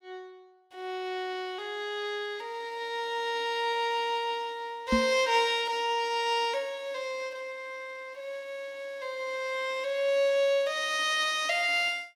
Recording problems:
microphone thump; at 5 s; peak +5 dB vs average level

